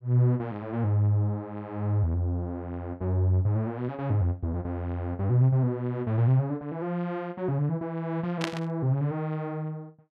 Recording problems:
static burst; at 8.5 s; peak +1 dB vs average level

